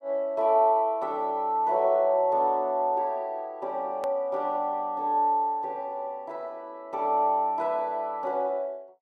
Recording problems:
edit click; at 4 s

